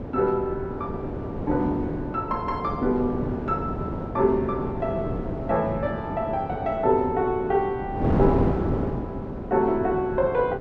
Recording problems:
wind on the microphone; below 440 Hz, SNR 4 dB

